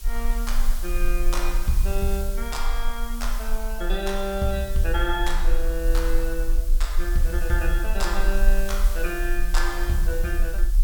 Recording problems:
background hiss; slope +1 dB per octave, SNR 11 dB
rumble; below 38 Hz, strongest tone 22 Hz, SNR -1 dB

